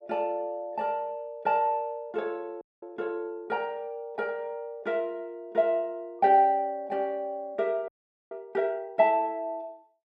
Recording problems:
frozen audio; at 2.5 s and at 8 s

